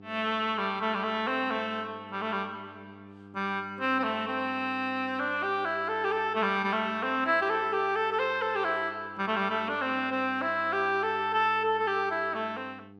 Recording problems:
hum; 50 Hz, harmonics up to 900 Hz, SNR 21 dB

